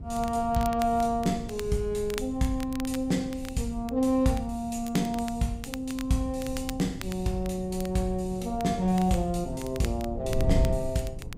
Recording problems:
wind noise; below 120 Hz, SNR 10 dB
crackling; vinyl, SNR 16 dB

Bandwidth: 15.5 kHz